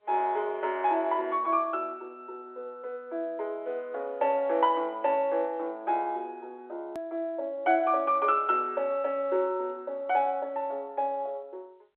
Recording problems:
telephone audio; 300 Hz to 3.6 kHz, G.711
click at an edit; at 7 s

